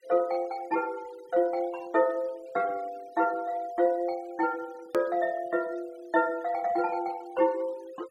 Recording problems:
denoising artefacts; signal-to-artefact ratio 24 dB
click at an edit; at 5 s

